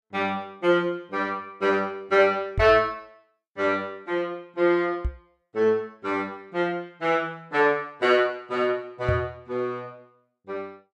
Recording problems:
microphone thump; at 2.5 s, at 5 s and at 9 s; peak +1 dB vs average level

